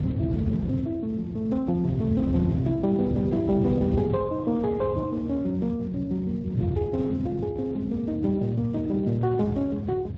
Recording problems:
lossy codec; MP3, then Speex, log-spectral distance 2 dB
wind on the microphone; below 190 Hz, SNR 5 dB

